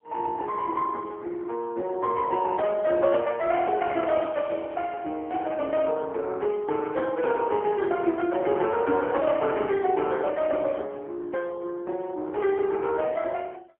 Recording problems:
telephone audio; 260 Hz to 3.2 kHz, AMR-NB, then MP3

